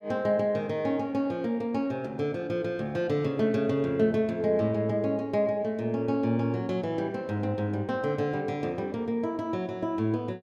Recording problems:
none

